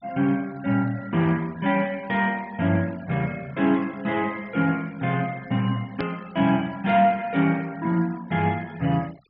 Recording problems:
treble cut off; nothing above 5.5 kHz
noise reduction artefacts; signal-to-artefact ratio 24 dB
edit click; at 6 s

